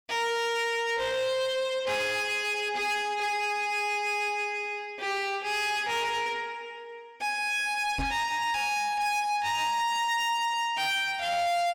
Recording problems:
distortion; soft clipping, signal-to-distortion ratio 10 dB
microphone bump; at 8 s; peak -2 dB vs average level

